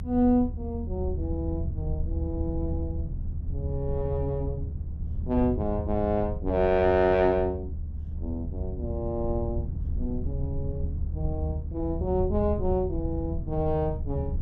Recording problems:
rumble; below 82 Hz, SNR 4 dB

